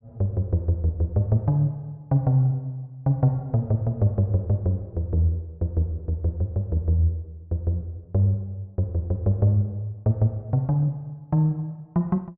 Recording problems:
none

